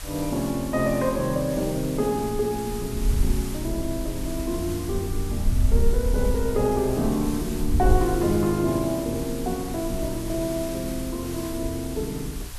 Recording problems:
background hiss; SNR 12 dB
wind on the microphone; below 66 Hz, SNR 6 dB

